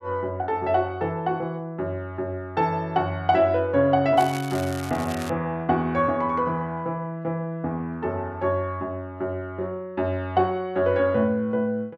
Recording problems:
crackle; from 4 to 5.5 s; loose cable, SNR 15 dB

